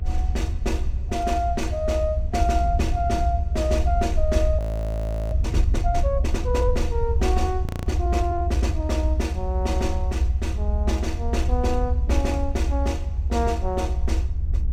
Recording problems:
rumble; below 76 Hz, SNR -2 dB
wind noise; below 84 Hz, SNR 7 dB
audio freezing; at 4.5 s for 0.5 s and at 7.5 s

